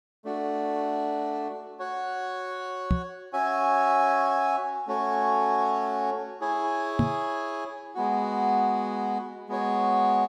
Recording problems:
microphone bump; at 3 s and at 7 s; peak +7 dB vs average level

